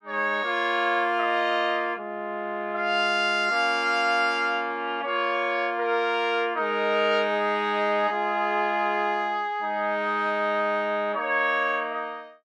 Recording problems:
none

